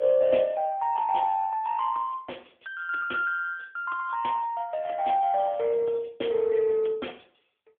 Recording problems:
phone line; 280 Hz to 3.4 kHz, AMR-NB

